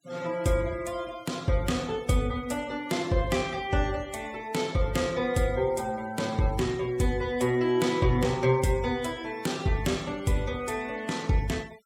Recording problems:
denoising artefacts; signal-to-artefact ratio 20 dB

